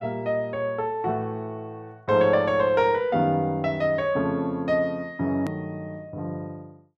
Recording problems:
edit click; at 5.5 s

